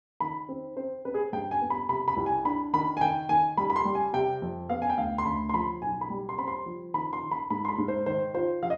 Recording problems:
none

